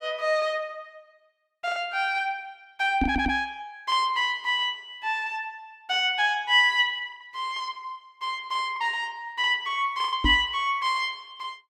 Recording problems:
lost packets; 3% of the sound replaced, filled with the last packet
microphone thump; at 3 s and at 10 s; peak +3 dB vs average level
stutter; at 3 s

